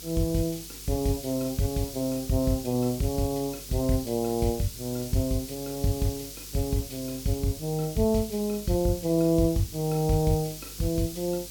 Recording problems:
hum; 50 Hz, harmonics up to 450 Hz, SNR 22 dB
hiss; slope +5 dB per octave, SNR 11 dB

